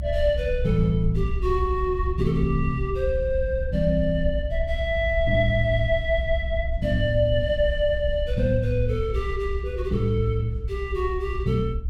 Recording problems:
rumble; below 66 Hz, SNR 5 dB

